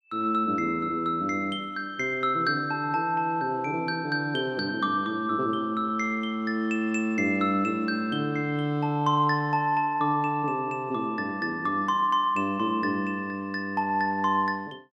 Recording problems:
none

